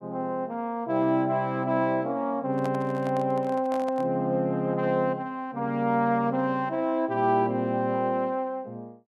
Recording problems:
handling noise; from 2.5 to 4 s; peak -7 dB vs average level

